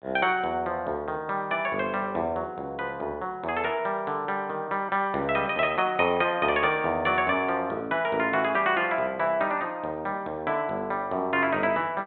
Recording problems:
treble cut off; nothing above 4 kHz

